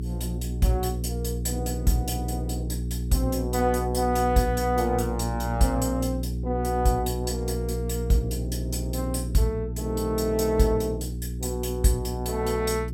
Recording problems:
hum; 60 Hz, harmonics up to 420 Hz, SNR 4 dB

